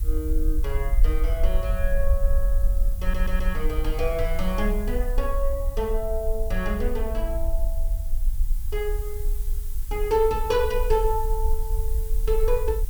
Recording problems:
background hiss; slope +1 dB per octave, SNR 15 dB
rumble; below 46 Hz, SNR 0 dB
stutter; at 3 s

